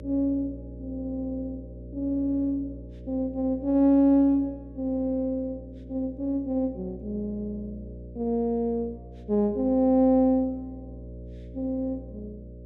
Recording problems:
electrical hum; 60 Hz, harmonics up to 600 Hz, SNR 16 dB

